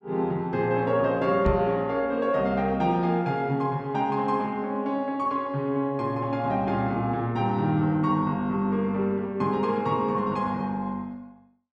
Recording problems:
microphone bump; at 1.5 s; peak +2 dB vs average level

